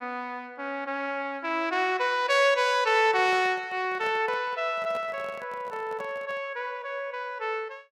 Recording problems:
handling noise; from 3 to 6.5 s; peak -10 dB vs average level

